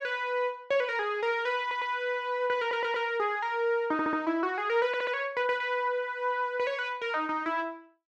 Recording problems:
audio stuttering; 4 times, first at 1.5 s

